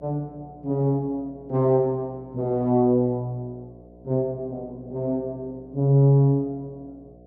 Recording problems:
hum; 60 Hz, harmonics up to 720 Hz, SNR 25 dB

